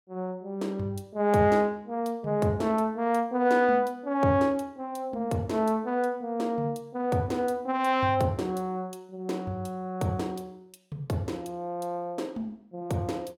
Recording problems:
none

